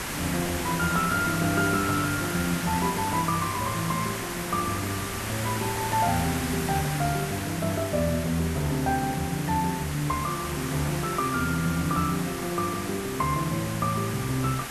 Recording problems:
background hiss; SNR 5 dB

